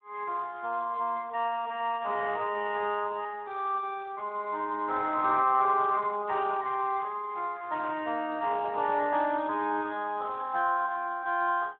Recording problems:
phone line; 240 Hz to 3.7 kHz, Speex

